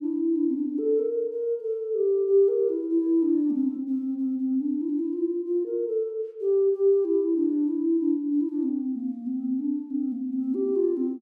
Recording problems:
none

